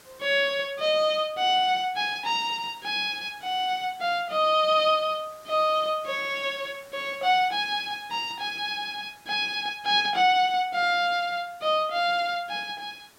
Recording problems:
background hiss; slope -2 dB per octave, SNR 27 dB

